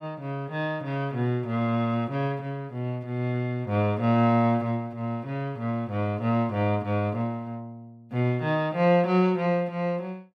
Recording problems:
none

